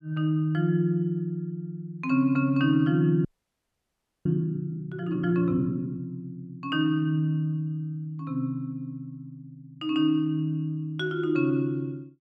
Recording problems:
audio freezing; at 3.5 s for 1 s

